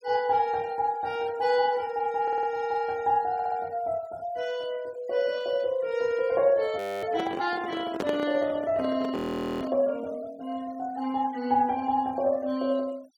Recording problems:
denoising artefacts; signal-to-artefact ratio 23 dB
audio stuttering; at 2 s and at 3.5 s
frozen audio; at 7 s and at 9 s
microphone handling noise; from 7 to 9.5 s; peak 0 dB vs average level

